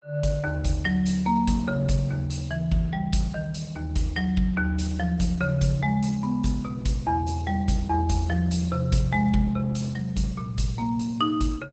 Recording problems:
codec artefacts; Opus, log-spectral distance 3 dB, nothing above 7.8 kHz

